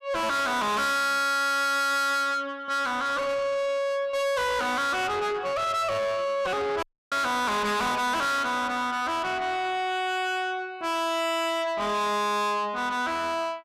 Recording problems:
distorted audio; soft clipping, signal-to-distortion ratio 6 dB
audio cutting out; at 7 s

